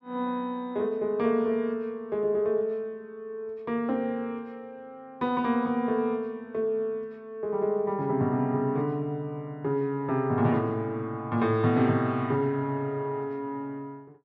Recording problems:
none

